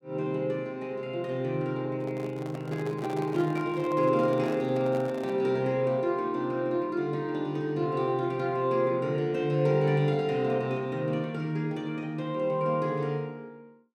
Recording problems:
microphone handling noise; from 2 to 5.5 s; peak -7 dB vs average level

